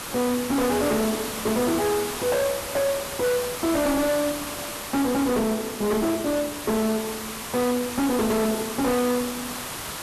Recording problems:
distortion; hard clipping, signal-to-distortion ratio 7 dB
background hiss; SNR 7 dB

